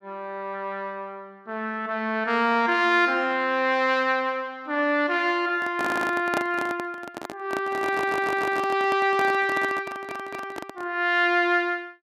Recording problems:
microphone handling noise; from 5.5 to 11 s; peak 0 dB vs average level
stutter; at 6 s, at 8 s and at 10 s

